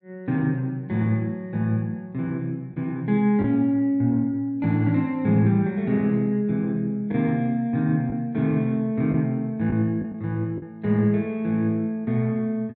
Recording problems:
packet loss; 1.6% of the sound replaced, filled with the last packet

